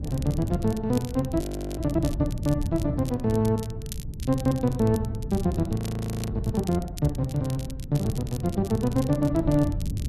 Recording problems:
wind on the microphone; below 150 Hz, SNR 8 dB
crackling; vinyl, SNR 18 dB
frozen audio; at 1.5 s and at 6 s for 0.5 s

